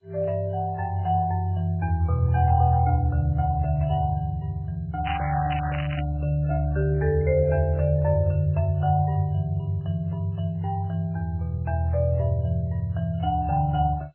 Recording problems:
lossy codec; MP3, then MP2, log-spectral distance 2 dB
crackling; at 5 s; loose cable, SNR 11 dB

